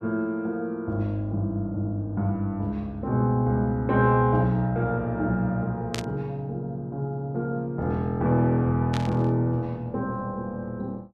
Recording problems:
burst of static; at 6 s and at 9 s; peak -1 dB vs average level

